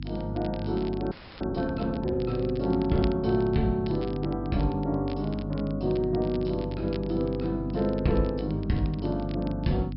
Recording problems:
treble cut off; nothing above 5.3 kHz
hum; 50 Hz, harmonics up to 300 Hz, SNR 7 dB
crackling; vinyl, SNR 22 dB
audio freezing; at 1 s

